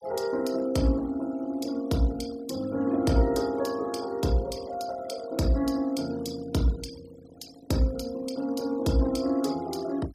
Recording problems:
denoising artefacts; signal-to-artefact ratio 19 dB

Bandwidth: 15 kHz